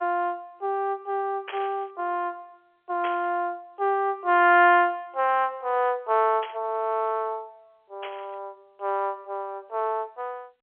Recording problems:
telephone audio; 340 Hz to 3.5 kHz, G.711
static burst; 4 times, first at 1.5 s; peak -6 dB vs average level

